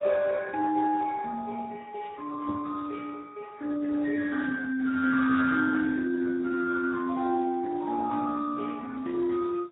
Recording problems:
codec artefacts; Speex, then AAC, log-spectral distance 4 dB, nothing above 3.8 kHz
knock on the microphone; at 2.5 s; peak -4 dB vs average level

